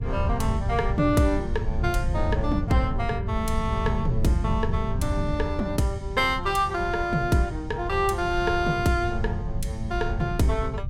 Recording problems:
wind noise; below 110 Hz, SNR 4 dB

